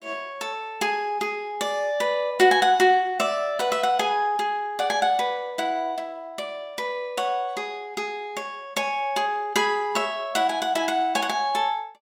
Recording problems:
none

